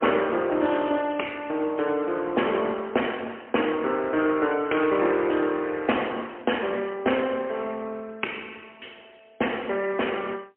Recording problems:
telephone audio; 260 Hz to 3.1 kHz, AMR-NB, then MP3

